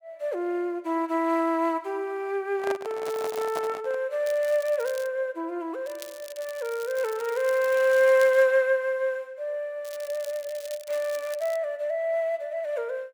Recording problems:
handling noise; from 2.5 to 4 s; peak -3 dB vs average level
crackle; 4 times, first at 3 s; loose cable, SNR 19 dB

